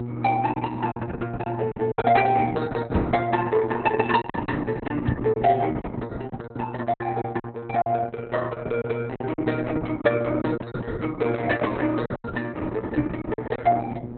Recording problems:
codec artefacts; Opus, log-spectral distance 4 dB, nothing above 4 kHz
electrical hum; 60 Hz, harmonics up to 960 Hz, SNR 10 dB
packet loss; 7% of the sound replaced, filled with silence
knock on the microphone; at 3 s, at 5 s and at 13 s; peak +7 dB vs average level

